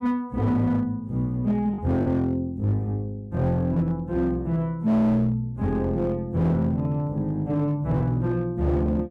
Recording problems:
distorted audio; hard clipping, signal-to-distortion ratio 12 dB
packet loss; 1.1% of the sound replaced, filled with the last packet

